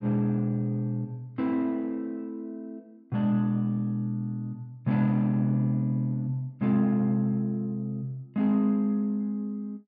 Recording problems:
none

